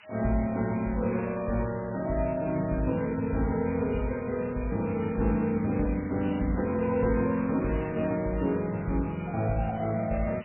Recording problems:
lossy compression; MP3, log-spectral distance 17 dB, nothing above 2.4 kHz
hiss; SNR 20 dB

